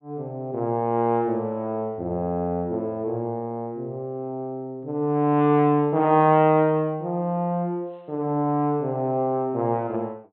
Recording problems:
treble missing; nothing above 4 kHz

